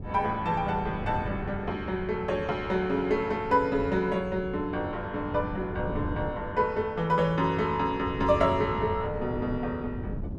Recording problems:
wind on the microphone; below 220 Hz, SNR 10 dB

